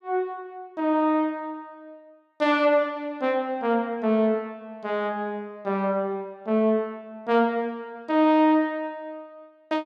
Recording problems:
none

